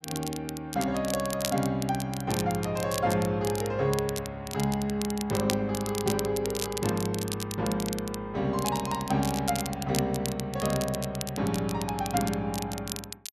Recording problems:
crackling; vinyl, SNR 8 dB

